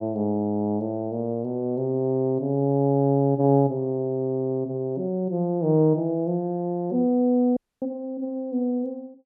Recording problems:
audio cutting out; at 7.5 s

